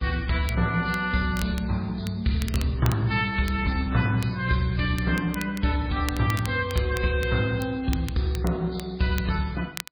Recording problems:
lossy codec; AAC, then MP3, log-spectral distance 4 dB
crackling; vinyl, SNR 17 dB

